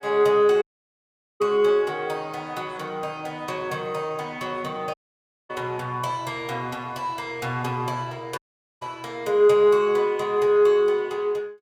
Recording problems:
dropout; at 0.5 s for 1 s, at 5 s for 0.5 s and at 8.5 s

